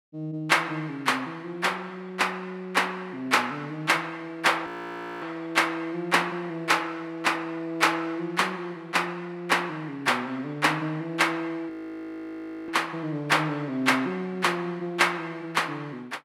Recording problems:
audio freezing; at 4.5 s for 0.5 s and at 12 s for 1 s

